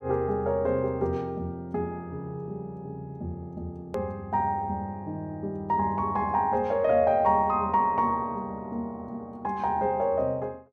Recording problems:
edit click; at 4 s

